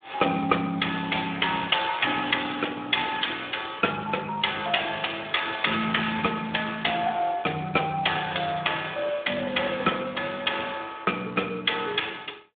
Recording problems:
phone line; 170 Hz to 3.6 kHz, Speex

